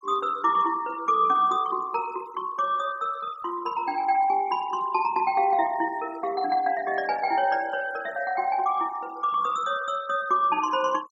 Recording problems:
noise reduction artefacts; signal-to-artefact ratio 22 dB

